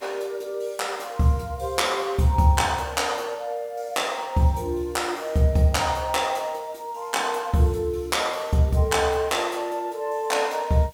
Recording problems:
background hiss; SNR 29 dB

